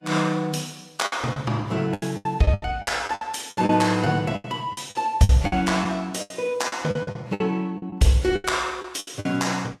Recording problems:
codec artefacts; Vorbis, log-spectral distance 3 dB, nothing above 12.7 kHz
lost packets; 15% of the sound replaced, filled with the last packet

